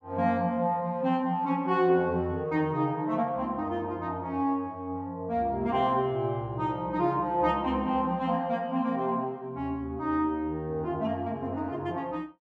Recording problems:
none

